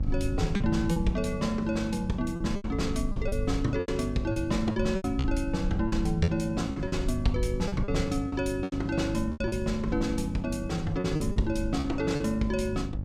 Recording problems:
hum; 50 Hz, harmonics up to 600 Hz, SNR 8 dB
low-frequency rumble; below 74 Hz, SNR 8 dB
packet loss; 10% of the sound replaced, filled with repeated pitch periods

